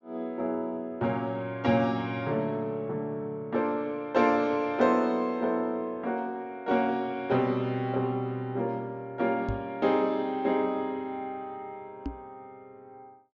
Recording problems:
low-pass filter; nothing above 8 kHz
knock on the microphone; at 9.5 s and at 12 s; peak -1 dB vs average level

